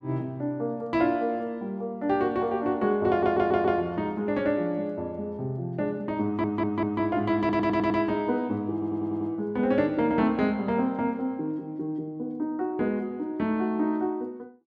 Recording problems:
audio stuttering; 4 times, first at 3 s

